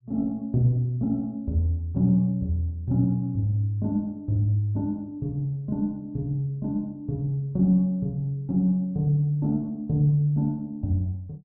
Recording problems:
none

